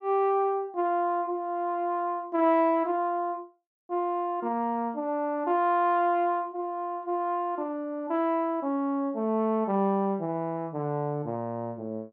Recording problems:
none

